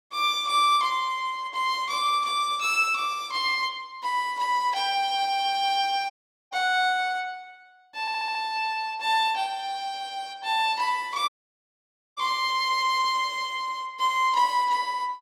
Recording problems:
audio cutting out; at 6 s and at 11 s for 1 s
audio stuttering; at 8 s

